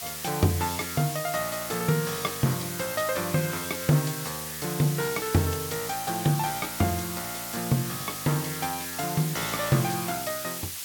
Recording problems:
hiss; slope +3 dB per octave, SNR 5 dB

